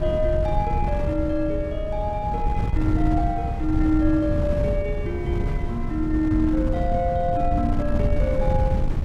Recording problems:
wind noise; below 120 Hz, SNR 1 dB

